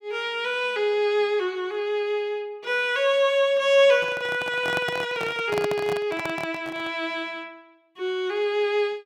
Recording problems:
microphone handling noise; from 4 to 7 s; peak -1 dB vs average level

